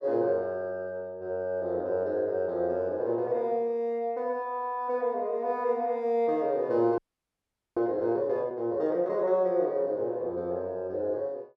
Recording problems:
audio freezing; at 7 s for 1 s

